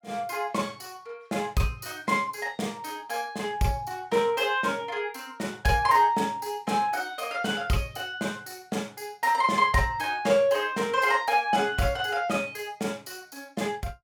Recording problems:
none

